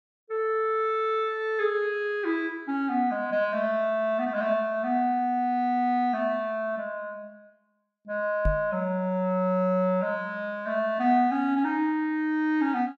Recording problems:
microphone thump; at 8.5 s; peak +2 dB vs average level

